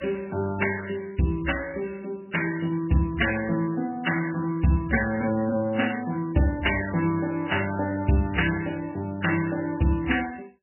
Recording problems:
codec artefacts; MP3, log-spectral distance 7 dB, nothing above 2.9 kHz

